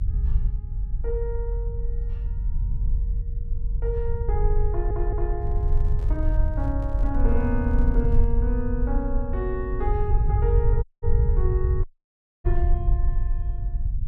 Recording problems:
low-frequency rumble; below 66 Hz, SNR -6 dB
audio stuttering; at 4.5 s
handling noise; from 5.5 to 8.5 s; peak -11 dB vs average level
audio cutting out; at 11 s and at 12 s for 0.5 s

